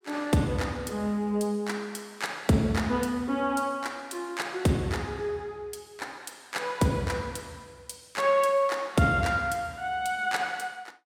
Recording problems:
none

